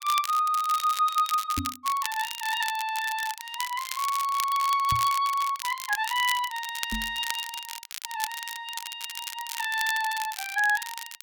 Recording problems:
crackling; vinyl, SNR 9 dB
microphone thump; at 1.5 s, at 5 s and at 7 s; peak 0 dB vs average level

